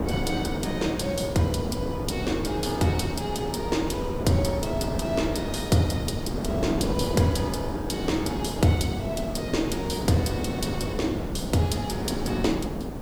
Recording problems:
hum; 60 Hz, harmonics up to 1.1 kHz, SNR 24 dB
background hiss; slope -1 dB per octave, SNR 24 dB
wind on the microphone; below 440 Hz, SNR 4 dB

